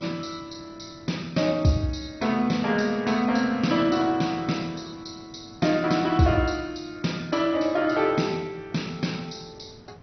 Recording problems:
lossy codec; MP2, log-spectral distance 6 dB, nothing above 6 kHz
background hiss; slope -7 dB per octave, SNR 24 dB

